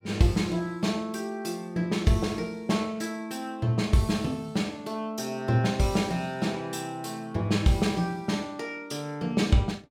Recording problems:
none

